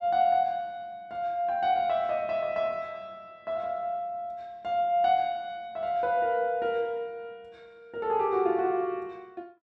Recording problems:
none

